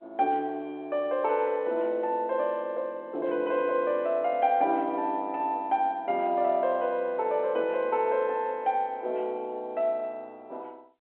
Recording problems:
telephone audio; 240 Hz to 3.6 kHz, G.711

